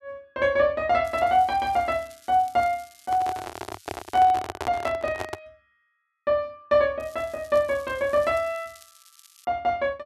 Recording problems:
crackle; from 1 to 4 s and from 7 to 9.5 s; loose cable, SNR 26 dB
microphone handling noise; from 3 to 5.5 s; peak -3 dB vs average level

